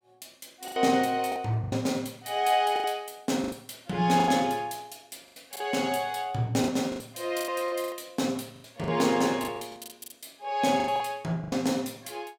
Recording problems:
packet loss; 12% of the sound replaced, filled with the last packet

